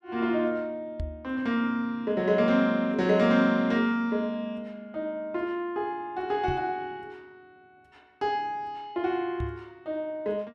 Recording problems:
microphone thump; at 1 s, at 6.5 s and at 9.5 s; peak -3 dB vs average level

